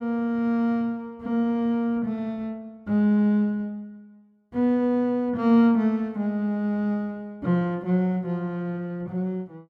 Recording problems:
none

